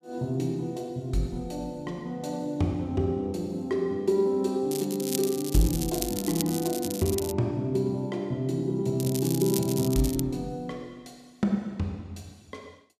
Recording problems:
crackling; from 4.5 to 7.5 s and from 9 to 10 s; loose cable, SNR 7 dB

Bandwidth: 14.5 kHz